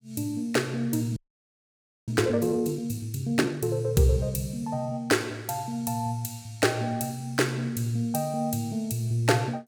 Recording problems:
audio freezing; at 1 s for 1 s

